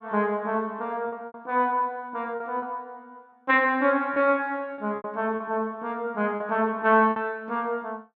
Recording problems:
packet loss; 6% of the sound replaced, filled with repeated pitch periods

